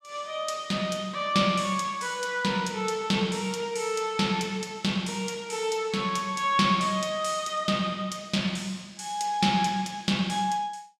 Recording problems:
none

